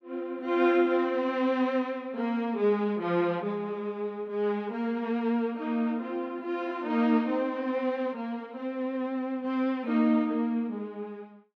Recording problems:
none

